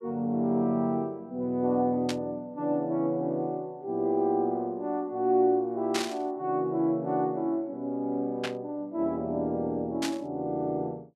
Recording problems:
static burst; 4 times, first at 2 s; peak +2 dB vs average level

